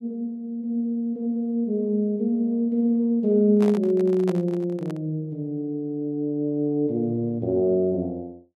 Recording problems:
handling noise; from 3.5 to 5 s; peak -5 dB vs average level

